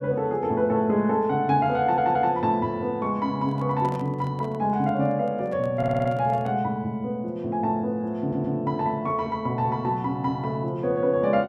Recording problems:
audio stuttering; at 2 s, at 6 s and at 8 s
handling noise; from 3.5 to 6.5 s; peak -10 dB vs average level

